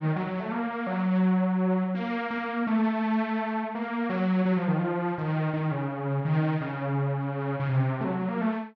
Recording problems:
none

